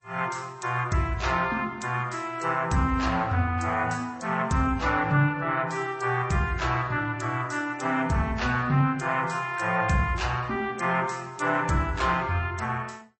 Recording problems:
lossy compression; Vorbis, then MP3, log-spectral distance 4 dB, nothing above 8.2 kHz

